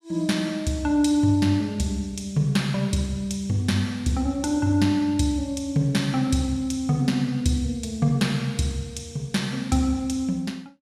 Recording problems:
none

